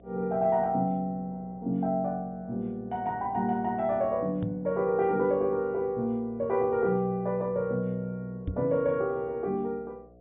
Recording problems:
treble cut off; nothing above 3.6 kHz
electrical hum; 60 Hz, harmonics up to 720 Hz, SNR 26 dB
knock on the microphone; at 4.5 s and at 8.5 s; peak 0 dB vs average level

